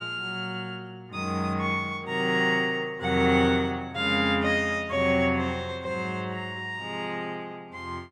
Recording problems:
none

